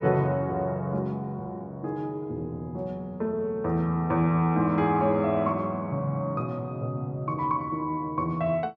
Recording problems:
none

